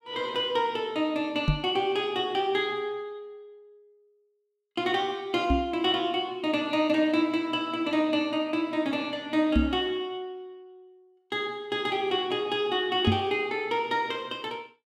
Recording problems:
knock on the microphone; 4 times, first at 1.5 s; peak +7 dB vs average level

